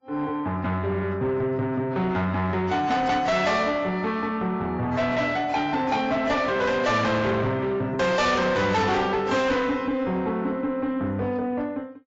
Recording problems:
lossy compression; AAC, log-spectral distance 2 dB, nothing above 7.3 kHz
distorted audio; soft clipping, signal-to-distortion ratio 7 dB

